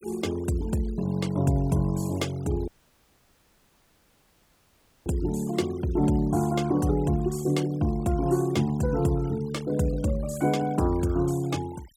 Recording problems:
denoising artefacts; signal-to-artefact ratio 22 dB
audio cutting out; at 2.5 s for 2.5 s

